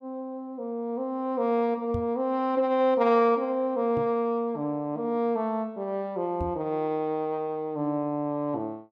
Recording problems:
microphone thump; at 2 s, at 4 s and at 6.5 s; peak -2 dB vs average level

